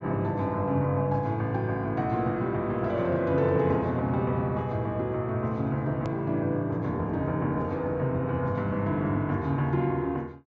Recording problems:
treble cut off; nothing above 8 kHz
edit click; at 6 s

